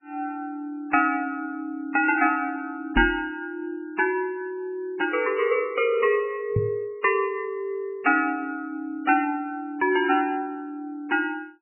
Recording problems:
lossy codec; MP3, log-spectral distance 2 dB, nothing above 2.7 kHz
microphone thump; at 3 s and at 6.5 s; peak +4 dB vs average level

